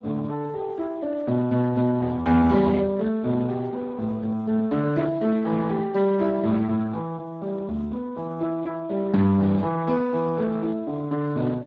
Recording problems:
lossy codec; Speex, log-spectral distance 3 dB

